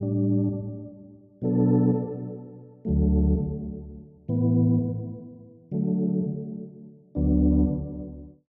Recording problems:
none

